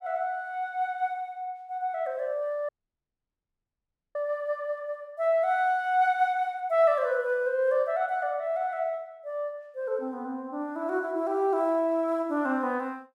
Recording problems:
audio cutting out; at 2.5 s for 1.5 s

